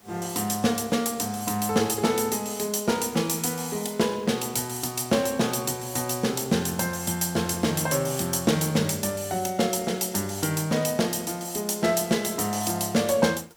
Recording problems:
hiss; slope -3 dB per octave, SNR 29 dB

